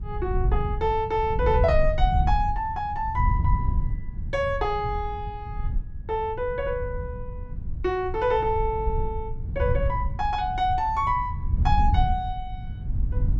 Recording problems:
rumble; below 88 Hz, SNR 3 dB

